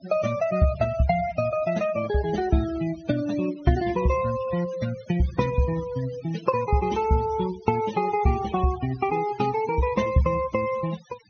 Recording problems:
low-pass filter; nothing above 6.4 kHz
noise reduction artefacts; signal-to-artefact ratio 16 dB

